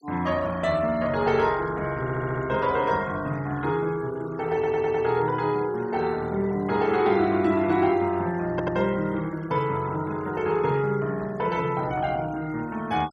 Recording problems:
noise reduction artefacts; signal-to-artefact ratio 23 dB
audio stuttering; at 2 s, at 4.5 s and at 8.5 s

